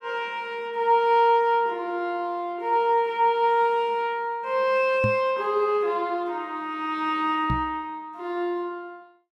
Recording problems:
knock on the microphone; at 5 s and at 7.5 s; peak +1 dB vs average level

